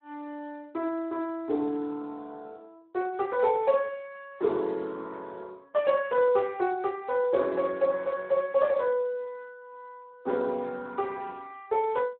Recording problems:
telephone audio; 260 Hz to 2.8 kHz, Speex

